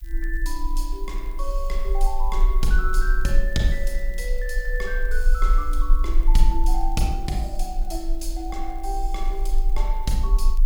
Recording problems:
hiss; slope +1 dB per octave, SNR 24 dB
low-frequency rumble; below 36 Hz, strongest tone 24 Hz, SNR -3 dB
crackling; vinyl, SNR 29 dB

